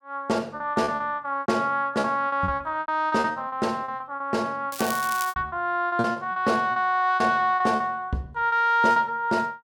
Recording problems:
packet loss; 14% of the sound replaced, filled with repeated pitch periods
crackle; at 4.5 s; loose cable, SNR 10 dB

